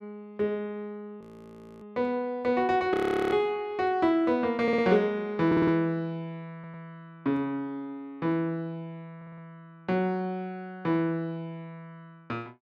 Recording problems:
audio freezing; at 1 s for 0.5 s and at 3 s
audio stuttering; 4 times, first at 4.5 s

